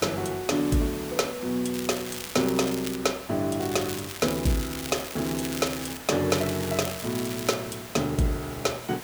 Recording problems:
background hiss; slope -3 dB per octave, SNR 12 dB
crackling; from 1.5 to 3 s, from 3.5 to 6 s and from 6.5 to 7.5 s; loose cable, SNR 10 dB

